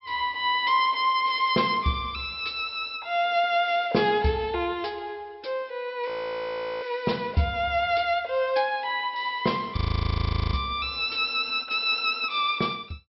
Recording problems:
treble missing; nothing above 5.5 kHz
audio freezing; at 6 s for 0.5 s and at 10 s for 1 s

